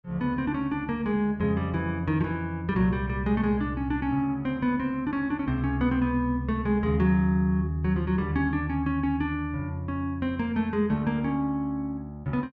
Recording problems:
none

